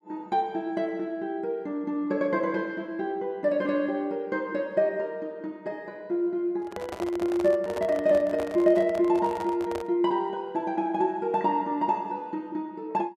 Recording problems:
microphone handling noise; from 6.5 to 10 s; peak -4 dB vs average level

